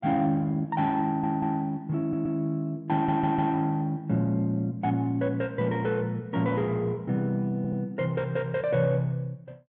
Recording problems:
stutter; 4 times, first at 1 s

